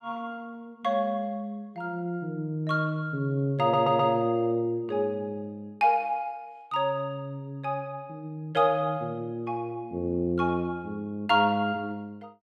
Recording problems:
audio stuttering; at 3.5 s

